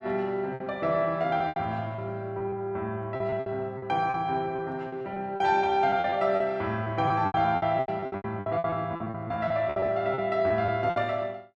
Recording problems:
packet loss; 15% of the sound replaced, filled with repeated pitch periods

